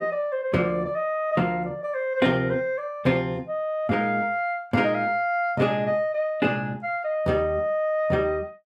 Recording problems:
none

